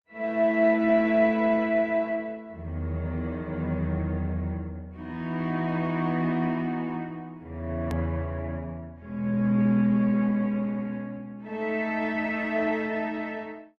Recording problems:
lossy compression; Opus, log-spectral distance 2 dB, nothing above 14.1 kHz
hard cut with a click; at 8 s

